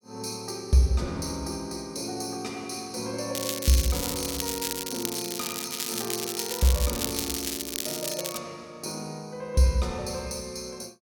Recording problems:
crackle; from 3.5 to 8.5 s; loose cable, SNR 1 dB

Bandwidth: 17 kHz